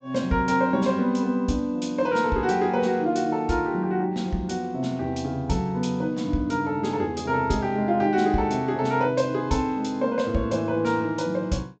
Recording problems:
treble missing; nothing above 8 kHz

